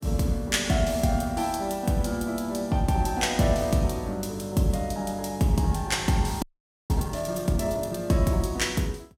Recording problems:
frozen audio; at 6.5 s

